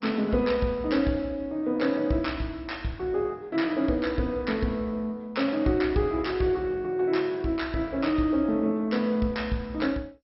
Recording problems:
codec artefacts; MP2, log-spectral distance 2 dB, nothing above 5.5 kHz

